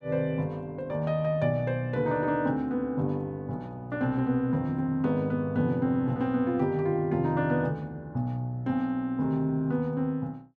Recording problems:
none

